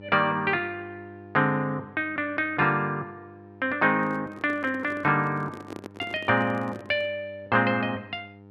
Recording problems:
hum; 50 Hz, harmonics up to 1.4 kHz, SNR 22 dB
microphone handling noise; from 4 to 7 s; peak -8 dB vs average level

